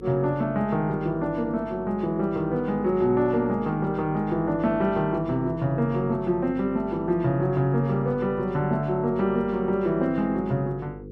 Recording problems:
hum; 50 Hz, harmonics up to 500 Hz, SNR 15 dB

